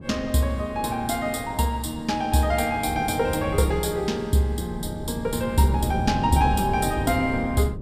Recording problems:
wind noise; below 220 Hz, SNR 9 dB

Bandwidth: 15 kHz